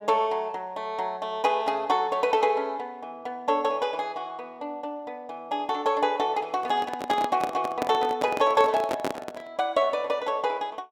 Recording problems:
handling noise; from 6.5 to 9.5 s; peak +1 dB vs average level

